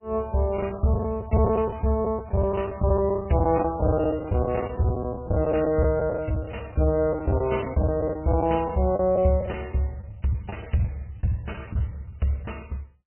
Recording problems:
lossy compression; MP3, log-spectral distance 5 dB, nothing above 2.7 kHz
packet loss; 11% of the sound replaced, filled with the last packet

